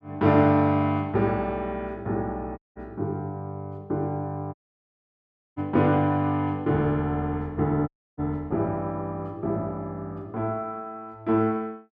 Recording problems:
dropout; at 2.5 s, at 4.5 s for 1 s and at 8 s

